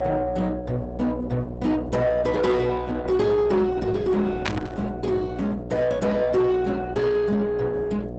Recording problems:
codec artefacts; Opus, log-spectral distance 2 dB, nothing above 7.8 kHz
distorted audio; soft clipping, signal-to-distortion ratio 12 dB
hum; 60 Hz, harmonics up to 720 Hz, SNR 11 dB
static burst; at 4.5 s; peak +1 dB vs average level

